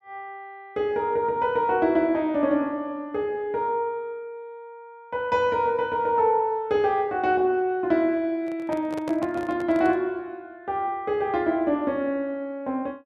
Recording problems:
microphone handling noise; from 8.5 to 10 s; peak -6 dB vs average level

